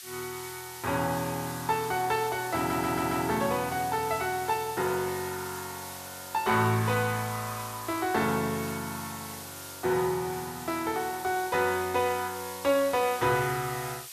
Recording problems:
background hiss; slope +4 dB per octave, SNR 11 dB
stutter; at 2.5 s

